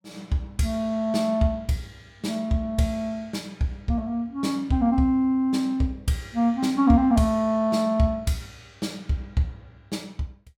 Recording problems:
none

